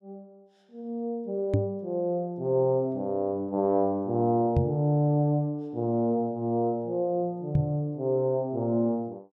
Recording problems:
microphone thump; at 1.5 s, at 4.5 s and at 7.5 s; peak +6 dB vs average level

